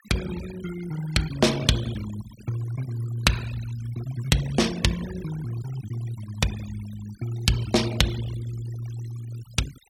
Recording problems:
denoising artefacts; signal-to-artefact ratio 14 dB

